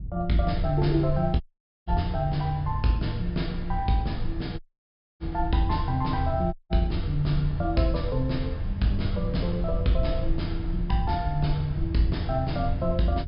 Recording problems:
low-pass filter; nothing above 5.5 kHz
low-frequency rumble; below 78 Hz, SNR 6 dB
dropout; at 1.5 s, at 4.5 s for 0.5 s and at 6.5 s

